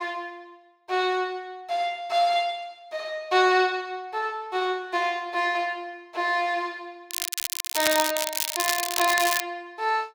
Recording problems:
crackle; from 7 to 9.5 s; loose cable, SNR 1 dB

